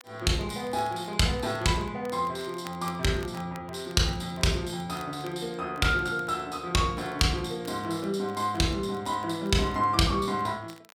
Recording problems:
crackle; vinyl, SNR 25 dB

